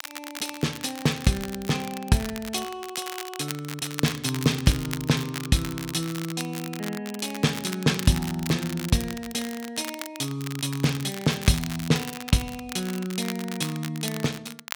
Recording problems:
crackle; vinyl, SNR 10 dB

